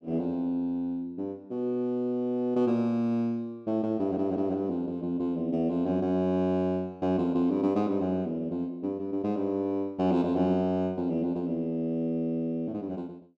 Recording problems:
audio stuttering; at 4 s

